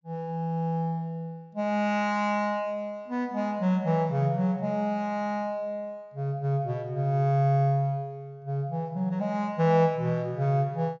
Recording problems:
low-pass filter; nothing above 7.2 kHz

